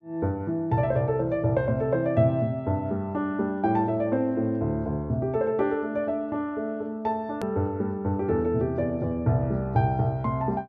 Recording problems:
click at an edit; at 7.5 s

